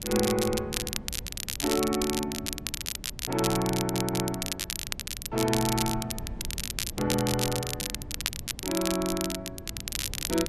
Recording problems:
wind on the microphone; below 170 Hz, SNR 14 dB
crackle; vinyl, SNR 3 dB
stutter; at 4 s

